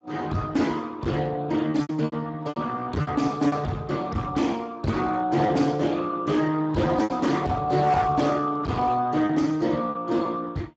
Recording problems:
lossy codec; Speex, log-spectral distance 4 dB, nothing above 7.3 kHz
distortion; hard clipping, signal-to-distortion ratio 10 dB
lost packets; 6% of the sound replaced, filled with repeated pitch periods

